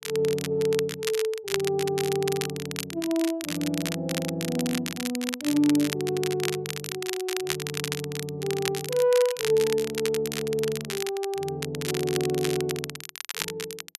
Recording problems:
crackling; vinyl, SNR 6 dB

